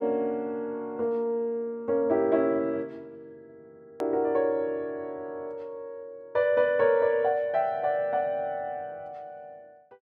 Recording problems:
click at an edit; at 4 s

